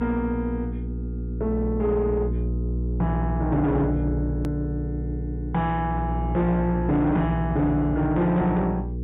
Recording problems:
treble cut off; nothing above 4 kHz
distorted audio; soft clipping, signal-to-distortion ratio 11 dB
hum; 60 Hz, harmonics up to 480 Hz, SNR 4 dB
hard cut with a click; at 4.5 s

